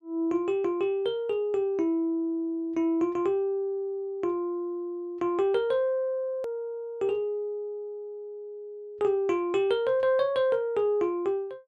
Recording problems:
edit click; at 6.5 s

